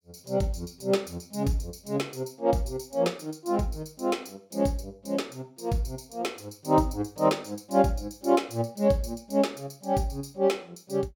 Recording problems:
none

